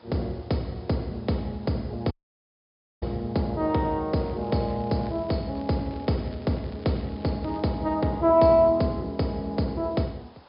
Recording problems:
treble missing; nothing above 5.5 kHz
hiss; SNR 27 dB
audio cutting out; at 2 s for 1 s
crackle; from 4 to 7.5 s; loose cable, SNR 27 dB

